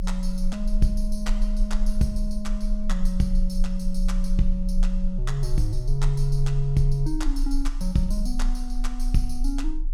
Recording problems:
rumble; below 30 Hz, strongest tone 28 Hz, SNR 1 dB

